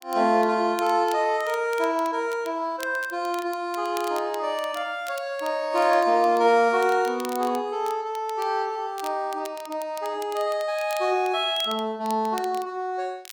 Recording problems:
crackling; vinyl, SNR 20 dB

